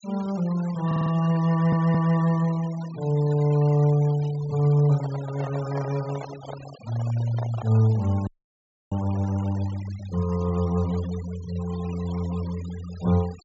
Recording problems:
low-pass filter; nothing above 8 kHz
noise reduction artefacts; signal-to-artefact ratio 19 dB
audio stuttering; at 1 s and at 1.5 s
handling noise; from 4.5 to 8 s; peak -8 dB vs average level
audio freezing; at 8.5 s for 0.5 s

